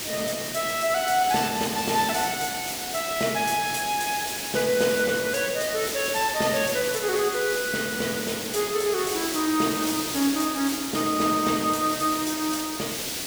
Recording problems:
background hiss; SNR 5 dB

